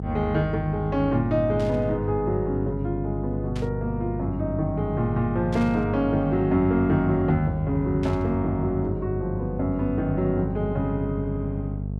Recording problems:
mains hum; 50 Hz, harmonics up to 500 Hz, SNR 6 dB
burst of static; 4 times, first at 1.5 s; peak -11 dB vs average level

